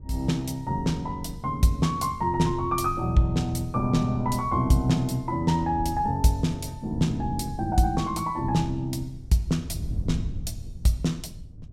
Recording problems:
wind noise; below 120 Hz, SNR 12 dB

